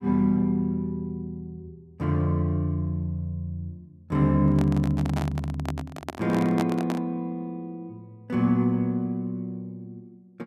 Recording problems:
handling noise; from 4.5 to 7 s; peak +1 dB vs average level

